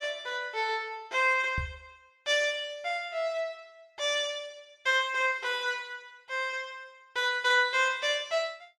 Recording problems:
microphone bump; at 1.5 s; peak -2 dB vs average level

